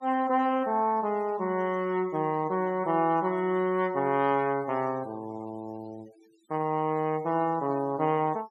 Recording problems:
noise reduction artefacts; signal-to-artefact ratio 26 dB

